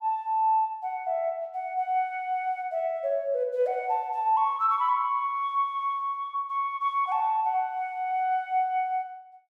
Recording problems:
none

